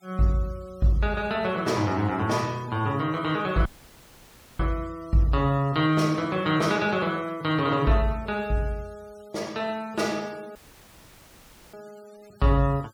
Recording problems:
denoising artefacts; signal-to-artefact ratio 26 dB
audio cutting out; at 3.5 s for 1 s and at 11 s for 1 s

